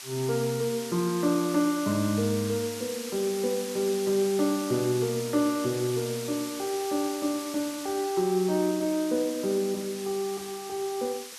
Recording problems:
background hiss; SNR 10 dB

